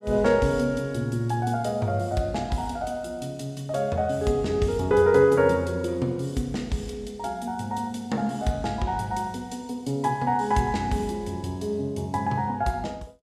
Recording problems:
none

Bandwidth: 14.5 kHz